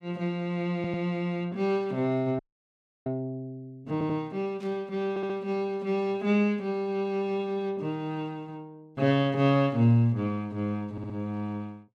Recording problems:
audio stuttering; 4 times, first at 1 s
frozen audio; at 2.5 s for 0.5 s
static burst; at 4.5 s; peak -18 dB vs average level

